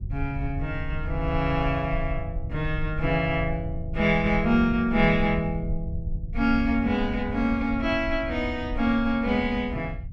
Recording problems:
low-frequency rumble; below 82 Hz, SNR 9 dB

